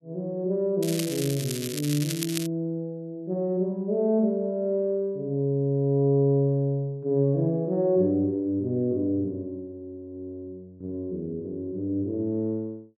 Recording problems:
crackle; from 1 to 2.5 s; loose cable, SNR 8 dB

